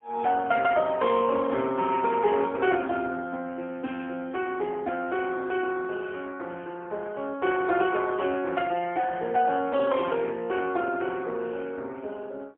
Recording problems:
phone line; 240 Hz to 3.4 kHz, AMR-NB, then MP3

